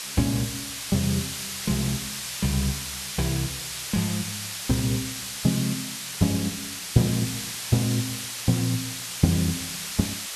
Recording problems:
hiss; slope +3 dB per octave, SNR 4 dB

